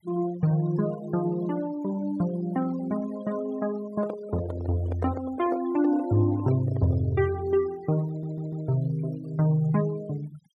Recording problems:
denoising artefacts; signal-to-artefact ratio 20 dB
microphone handling noise; from 4 to 7 s; peak -2 dB vs average level
stutter; at 8 s

